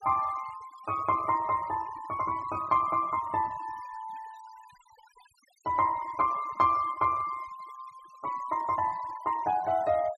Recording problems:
denoising artefacts; signal-to-artefact ratio 22 dB

